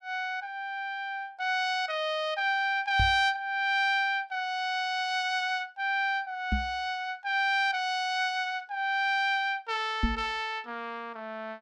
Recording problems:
microphone thump; at 3 s, at 6.5 s and at 10 s; peak +4 dB vs average level

